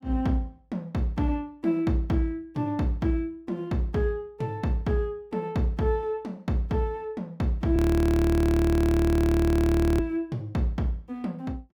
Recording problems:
frozen audio; at 8 s for 2 s

